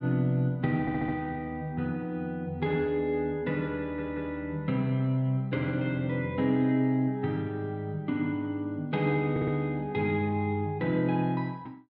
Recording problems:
stutter; at 1 s, at 4 s and at 9.5 s

